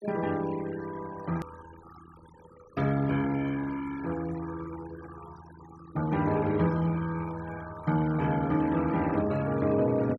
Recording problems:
noise reduction artefacts; signal-to-artefact ratio 18 dB
click at an edit; at 1.5 s

